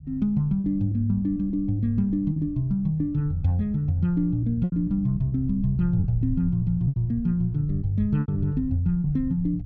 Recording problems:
rumble; below 110 Hz, SNR 13 dB
lost packets; 5% of the sound replaced, filled with repeated pitch periods

